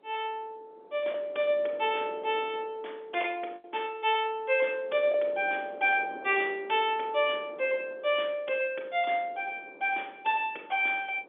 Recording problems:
phone line; 320 Hz to 3.5 kHz, G.711
wind on the microphone; below 650 Hz, SNR 20 dB
packet loss; 1.3% of the sound replaced, filled with the last packet

